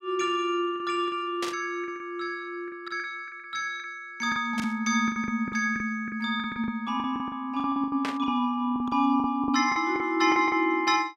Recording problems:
packet loss; 14% of the sound replaced, filled with the last packet
burst of static; at 1.5 s, at 4.5 s and at 8 s; peak -1 dB vs average level

